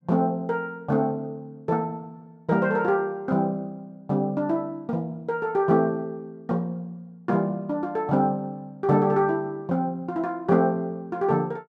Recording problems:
none

